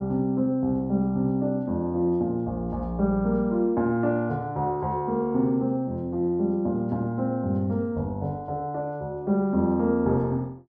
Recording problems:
none

